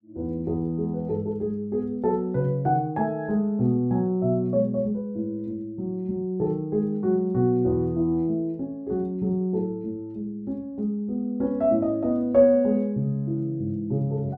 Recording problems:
none

